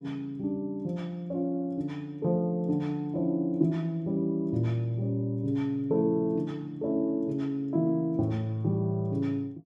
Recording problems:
none

